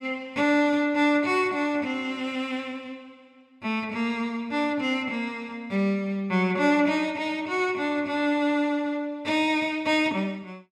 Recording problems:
none

